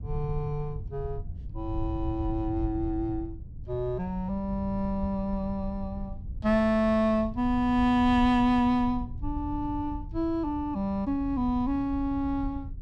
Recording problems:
rumble; below 92 Hz, SNR 11 dB

